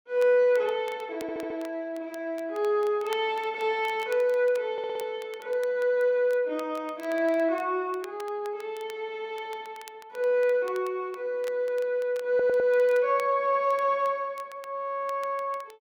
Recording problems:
crackling; vinyl, SNR 25 dB
audio stuttering; at 1 s, at 4.5 s and at 12 s

